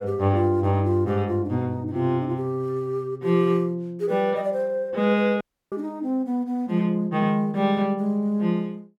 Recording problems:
dropout; at 5.5 s

